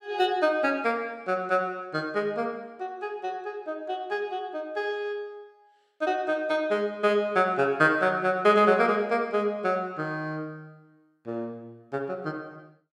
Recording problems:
none

